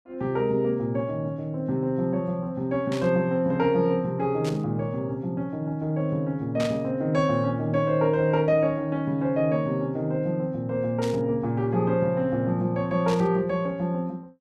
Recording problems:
burst of static; 5 times, first at 3 s; peak -6 dB vs average level

